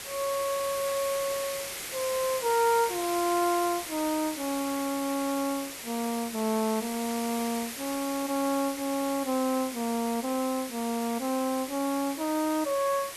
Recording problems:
hiss; SNR 7 dB

